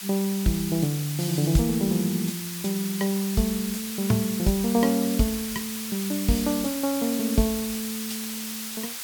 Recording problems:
background hiss; slope +3 dB per octave, SNR 7 dB

